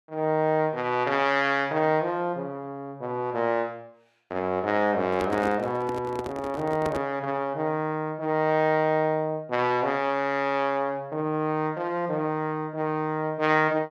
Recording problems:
microphone handling noise; from 5 to 7 s; peak -1 dB vs average level

